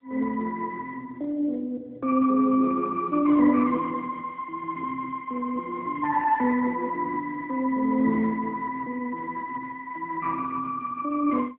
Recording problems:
phone line; 240 Hz to 2.3 kHz, AMR-NB

